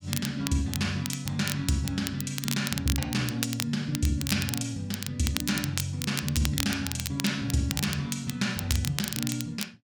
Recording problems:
crackle; vinyl, SNR 5 dB

